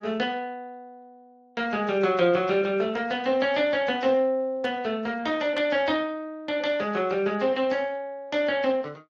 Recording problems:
lossy codec; Speex, then AAC, log-spectral distance 2 dB

